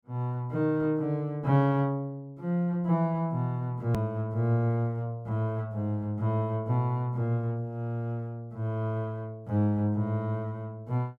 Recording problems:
edit click; at 4 s

